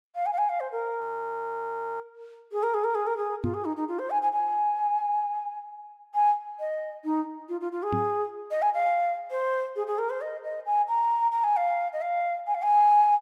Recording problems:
audio freezing; at 1 s for 1 s
knock on the microphone; at 3.5 s and at 8 s; peak +1 dB vs average level

